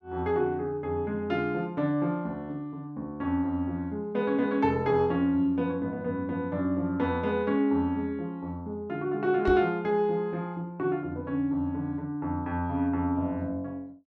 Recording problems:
microphone thump; at 9.5 s; peak +2 dB vs average level

